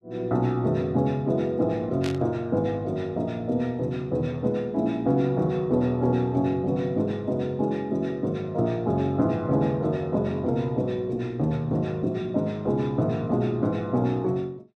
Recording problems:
burst of static; at 2 s; peak -6 dB vs average level

